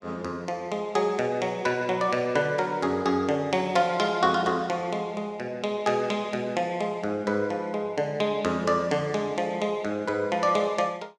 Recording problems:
none

